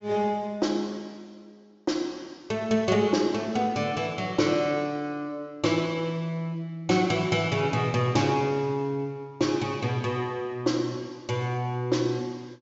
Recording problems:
low-pass filter; nothing above 8 kHz

